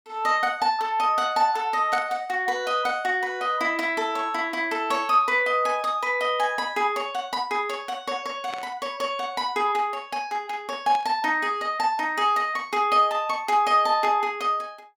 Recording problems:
burst of static; 4 times, first at 2 s; peak -8 dB vs average level

